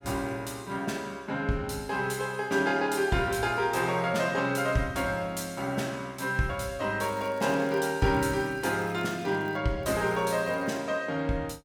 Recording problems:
crackling; from 7 to 9.5 s and at 10 s; loose cable, SNR 28 dB

